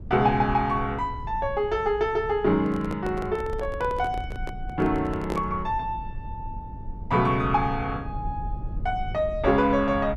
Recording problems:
low-frequency rumble; below 100 Hz, SNR 12 dB
microphone handling noise; from 2.5 to 5.5 s; peak -3 dB vs average level

